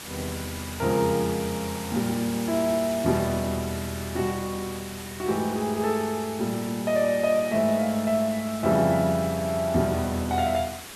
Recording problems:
background hiss; slope -1 dB per octave, SNR 12 dB

